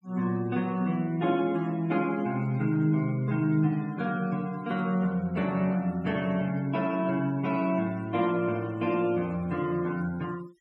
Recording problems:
noise reduction artefacts; signal-to-artefact ratio 25 dB

